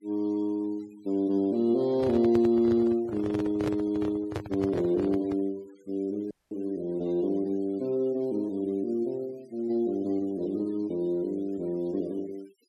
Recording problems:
denoising artefacts; signal-to-artefact ratio 27 dB
microphone handling noise; from 2 to 5.5 s; peak -1 dB vs average level
audio cutting out; at 6.5 s

